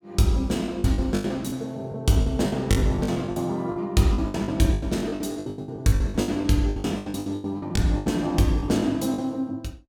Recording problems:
lost packets; 20% of the sound replaced, filled with the last packet

